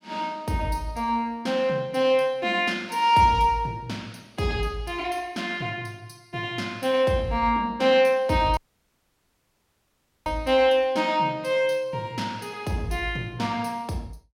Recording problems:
dropout; at 8.5 s for 1.5 s

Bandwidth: 16 kHz